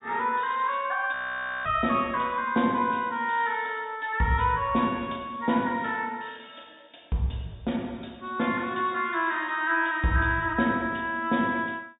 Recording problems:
treble cut off; nothing above 4 kHz
frozen audio; at 1 s for 0.5 s

